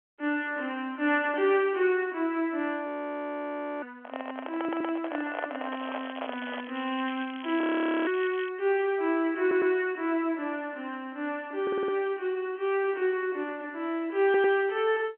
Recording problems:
telephone audio; 240 Hz to 3.5 kHz, G.711
audio freezing; at 3 s for 1 s and at 7.5 s
microphone handling noise; from 4 to 6.5 s; peak 0 dB vs average level
stutter; 4 times, first at 4.5 s
crackling; from 5.5 to 8.5 s; loose cable, SNR 16 dB

